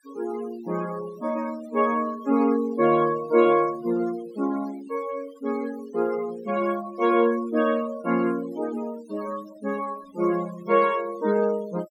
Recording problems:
denoising artefacts; signal-to-artefact ratio 19 dB

